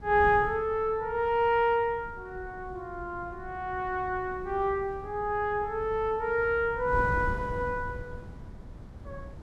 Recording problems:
wind on the microphone; below 180 Hz, SNR 14 dB

